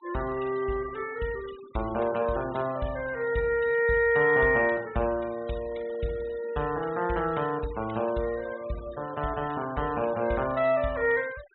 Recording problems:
treble missing; nothing above 4 kHz
denoising artefacts; signal-to-artefact ratio 20 dB

